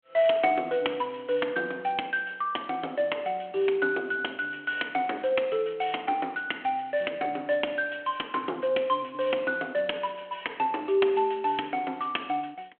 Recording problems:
phone line; 240 Hz to 3.3 kHz, G.726

